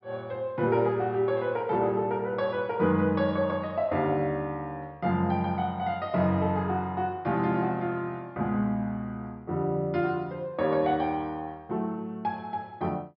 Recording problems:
treble cut off; nothing above 5.5 kHz

